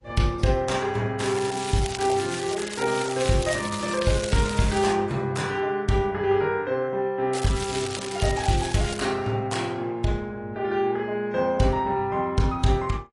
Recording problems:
lossy compression; MP3, then AAC, log-spectral distance 5 dB
crackle; from 1 to 5 s and from 7.5 to 9 s; loose cable, SNR 9 dB

